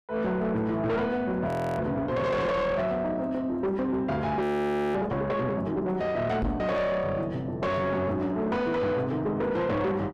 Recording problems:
distorted audio; soft clipping, signal-to-distortion ratio 7 dB
audio freezing; at 1.5 s and at 4.5 s for 0.5 s
microphone bump; at 6.5 s; peak +1 dB vs average level

